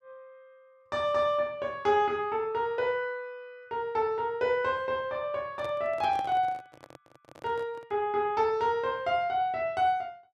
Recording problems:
handling noise; from 5.5 to 8 s; peak -8 dB vs average level

